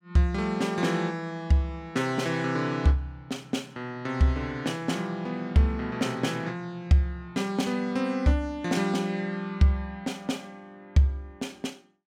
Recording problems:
none

